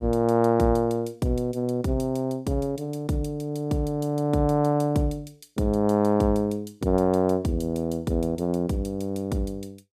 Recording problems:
none

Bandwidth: 15 kHz